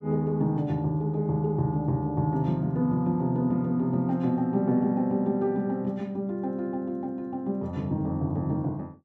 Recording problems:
none

